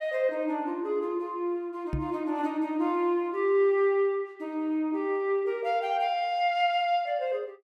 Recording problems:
microphone bump; at 2 s; peak 0 dB vs average level

